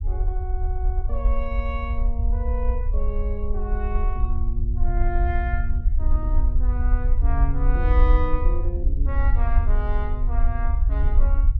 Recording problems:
low-frequency rumble; below 56 Hz, SNR -8 dB

